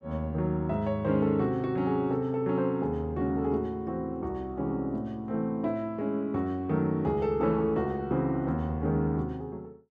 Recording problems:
none

